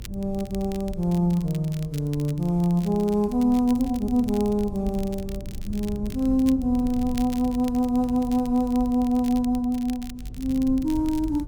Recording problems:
rumble; below 100 Hz, SNR 14 dB
crackle; vinyl, SNR 22 dB

